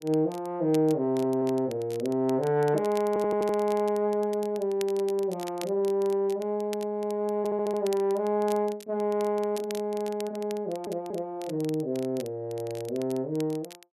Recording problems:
crackling; vinyl, SNR 20 dB
stutter; 4 times, first at 1 s

